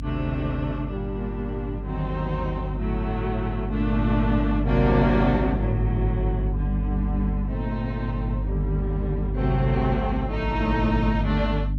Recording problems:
hum; 50 Hz, harmonics up to 300 Hz, SNR 3 dB

